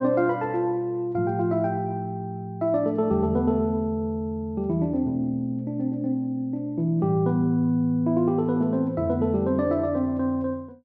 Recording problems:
none

